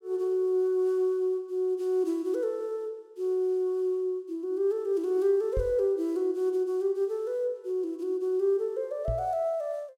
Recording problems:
microphone thump; at 5.5 s and at 9 s; peak 0 dB vs average level

